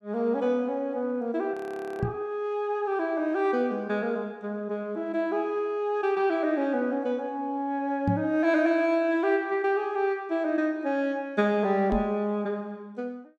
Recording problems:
frozen audio; at 1.5 s
microphone thump; at 2 s, at 8 s and at 12 s; peak +4 dB vs average level

